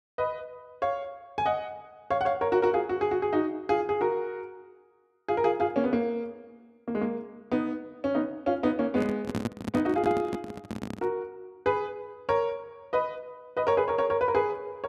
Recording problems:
microphone handling noise; from 9 to 11 s; peak +3 dB vs average level

